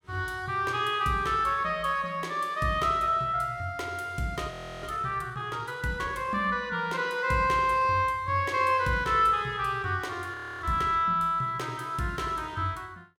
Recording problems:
audio freezing; at 4.5 s and at 10 s

